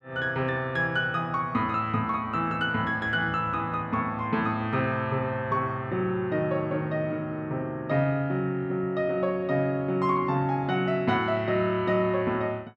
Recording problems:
none

